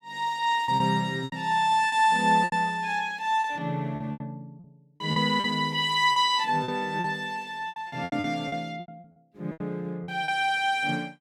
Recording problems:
packet loss; 12% of the sound replaced, filled with repeated pitch periods

